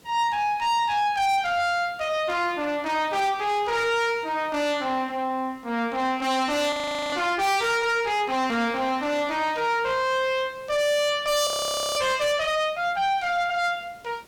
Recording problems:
distortion; soft clipping, signal-to-distortion ratio 7 dB
background hiss; slope -4 dB per octave, SNR 28 dB
frozen audio; at 6.5 s and at 11 s

